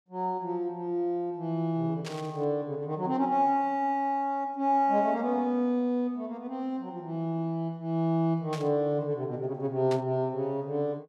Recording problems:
burst of static; at 2 s, at 8.5 s and at 10 s; peak -6 dB vs average level

